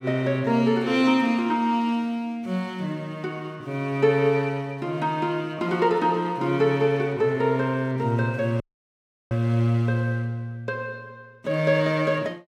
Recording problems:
dropout; at 8.5 s for 0.5 s

